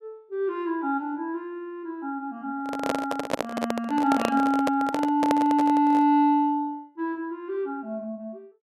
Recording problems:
handling noise; from 2.5 to 6 s; peak +4 dB vs average level

